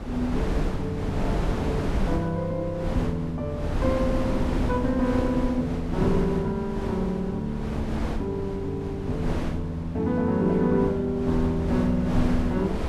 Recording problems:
wind on the microphone; below 340 Hz, SNR 4 dB

